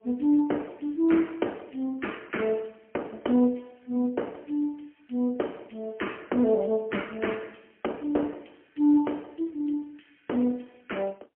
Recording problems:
phone line; 220 Hz to 3.1 kHz, AMR-NB, then MP3

